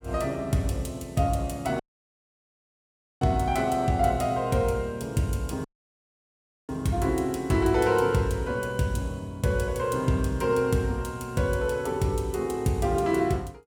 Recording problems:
dropout; at 2 s for 1.5 s and at 5.5 s for 1 s

